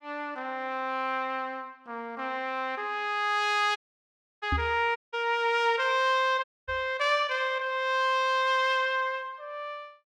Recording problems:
dropout; at 4 s for 0.5 s, at 5 s and at 6.5 s
microphone bump; at 4.5 s and at 6.5 s; peak +1 dB vs average level

